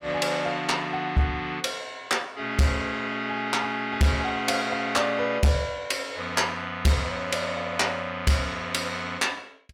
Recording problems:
distortion; hard clipping, signal-to-distortion ratio 11 dB

